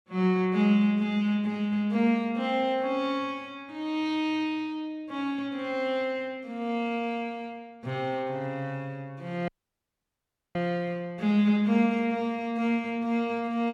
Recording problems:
audio cutting out; at 9.5 s for 1 s

